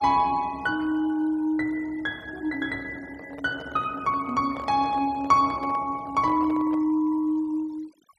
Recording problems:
noise reduction artefacts; signal-to-artefact ratio 26 dB
handling noise; from 3 to 7 s; peak -10 dB vs average level

